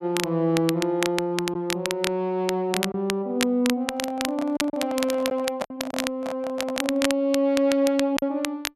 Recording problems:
crackling; vinyl, SNR 7 dB
lost packets; 3% of the sound replaced, filled with silence
handling noise; from 4 to 7 s; peak 0 dB vs average level

